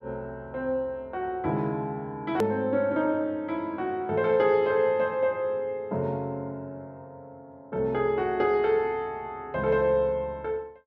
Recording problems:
edit click; at 2.5 s

